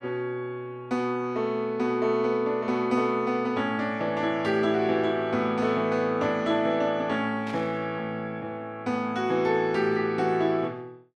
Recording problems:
burst of static; at 7.5 s; peak -11 dB vs average level

